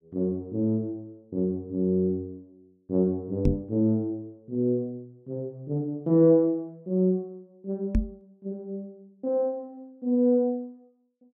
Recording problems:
microphone bump; at 3.5 s and at 8 s; peak +6 dB vs average level

